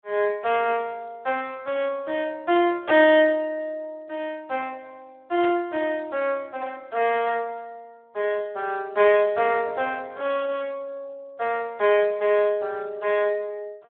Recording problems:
telephone audio; 300 Hz to 3.5 kHz, Speex
burst of static; at 5.5 s; peak -8 dB vs average level

